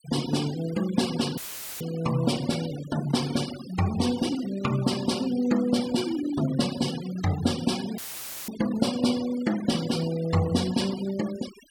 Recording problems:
denoising artefacts; signal-to-artefact ratio 14 dB
audio cutting out; at 1.5 s and at 8 s for 0.5 s; filled with static

